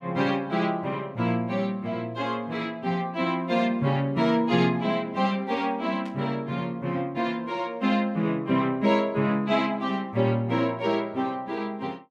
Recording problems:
burst of static; at 6 s; peak -15 dB vs average level

